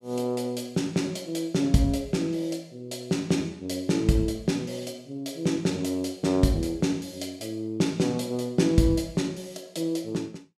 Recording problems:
none

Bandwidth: 14.5 kHz